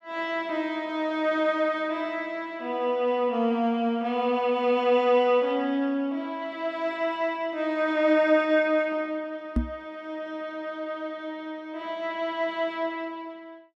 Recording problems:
microphone bump; at 9.5 s; peak +5 dB vs average level

